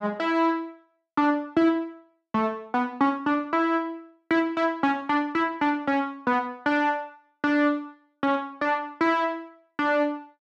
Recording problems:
none

